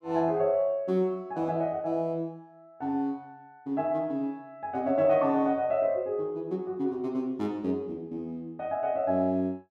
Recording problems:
none

